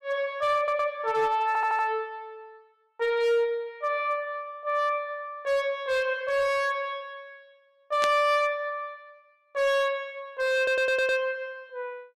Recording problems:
distortion; hard clipping, signal-to-distortion ratio 11 dB
audio stuttering; at 0.5 s, at 1.5 s and at 11 s
burst of static; at 8 s; peak -1 dB vs average level

